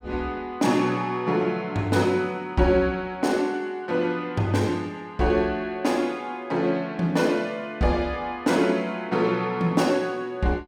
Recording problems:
none

